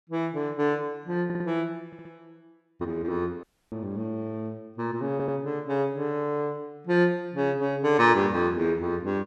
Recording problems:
audio stuttering; at 1.5 s, at 2 s and at 5 s
audio cutting out; at 3.5 s

